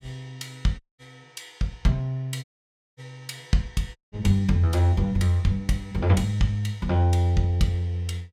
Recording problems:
dropout; at 1 s, at 2.5 s for 0.5 s and at 4 s

